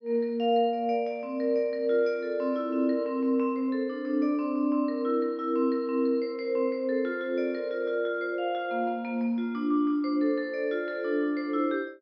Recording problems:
low-pass filter; nothing above 5.5 kHz

